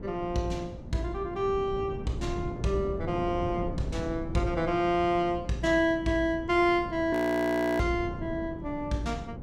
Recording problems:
hum; 60 Hz, harmonics up to 900 Hz, SNR 20 dB
wind noise; below 250 Hz, SNR 11 dB
audio freezing; at 7 s for 0.5 s

